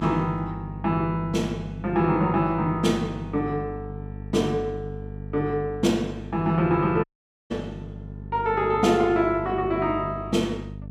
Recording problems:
hum; 50 Hz, harmonics up to 500 Hz, SNR 12 dB
audio cutting out; at 7 s

